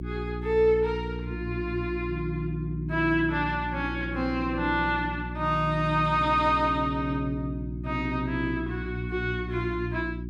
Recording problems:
hum; 60 Hz, harmonics up to 360 Hz, SNR 7 dB

